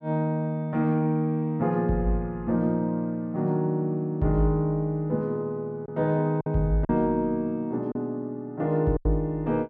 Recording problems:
packet loss; 2% of the sound replaced, filled with silence

